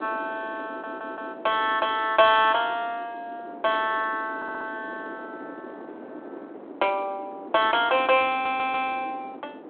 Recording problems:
telephone audio; 240 Hz to 3.7 kHz, G.726
wind on the microphone; below 610 Hz, SNR 17 dB
audio stuttering; at 0.5 s, at 4.5 s and at 8.5 s

